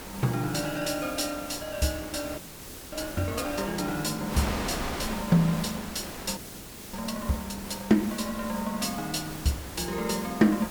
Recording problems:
hiss; SNR 12 dB
wind noise; below 2.1 kHz, SNR 9 dB
audio freezing; at 2.5 s for 0.5 s and at 6.5 s for 0.5 s

